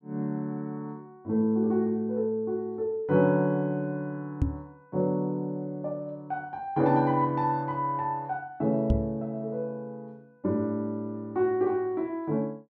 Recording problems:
microphone bump; at 4.5 s and at 9 s; peak +6 dB vs average level

